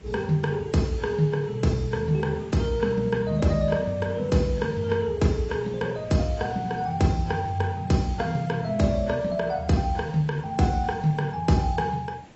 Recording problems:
lossy codec; AAC, log-spectral distance 2 dB, nothing above 7.8 kHz
hiss; SNR 22 dB

